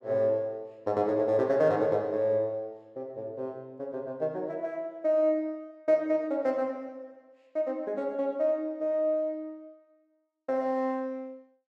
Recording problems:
none

